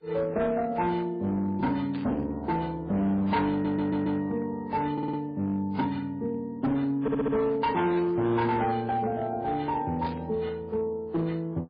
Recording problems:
lossy codec; AAC, then MP3, log-spectral distance 2 dB, nothing above 4.4 kHz
distortion; hard clipping, uneven, signal-to-distortion ratio 11 dB
static burst; 4 times, first at 2 s; peak -12 dB vs average level
audio stuttering; at 3.5 s, at 5 s and at 7 s

